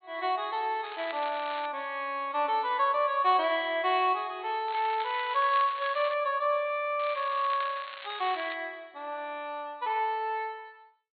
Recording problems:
treble missing; nothing above 4.3 kHz
crackling; at 1 s, from 4.5 to 6 s and from 7 to 8.5 s; loose cable, SNR 14 dB

